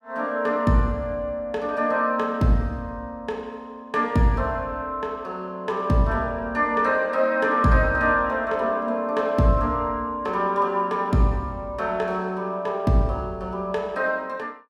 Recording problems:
none

